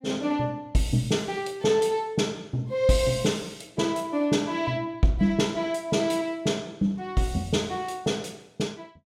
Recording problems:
none

